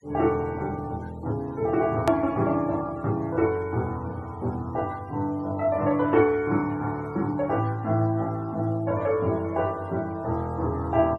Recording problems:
noise reduction artefacts; signal-to-artefact ratio 26 dB
click at an edit; at 2 s

